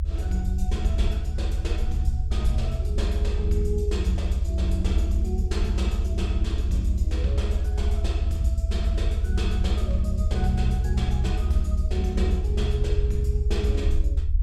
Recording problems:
rumble; below 74 Hz, SNR -5 dB

